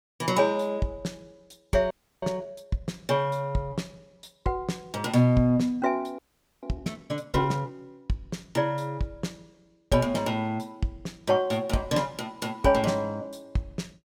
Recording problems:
frozen audio; at 2 s and at 6 s

